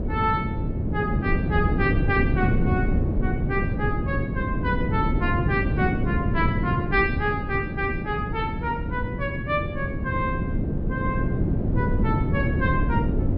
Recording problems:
treble missing; nothing above 5.5 kHz
wind noise; below 240 Hz, SNR -2 dB

